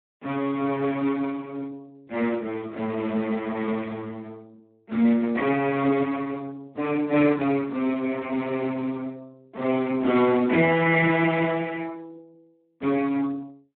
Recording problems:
telephone audio; 190 Hz to 3.6 kHz, Speex

